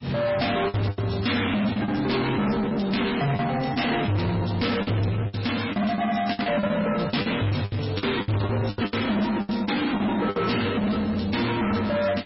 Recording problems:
codec artefacts; MP3, log-spectral distance 7 dB, nothing above 5.5 kHz
distorted audio; soft clipping, signal-to-distortion ratio 6 dB
packet loss; 12% of the sound replaced, filled with the last packet

